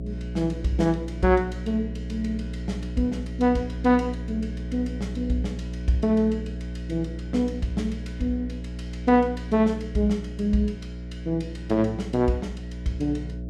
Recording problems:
mains hum; 60 Hz, harmonics up to 660 Hz, SNR 8 dB

